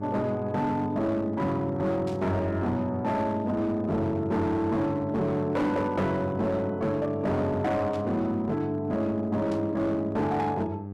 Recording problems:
distortion; hard clipping, signal-to-distortion ratio 11 dB
electrical hum; 50 Hz, harmonics up to 900 Hz, SNR 10 dB
burst of static; 4 times, first at 2 s; peak -15 dB vs average level

